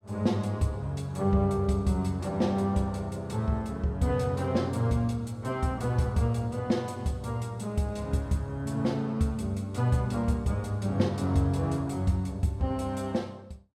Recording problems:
none

